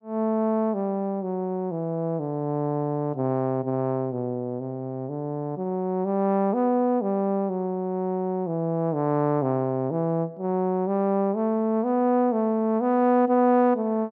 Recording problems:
none

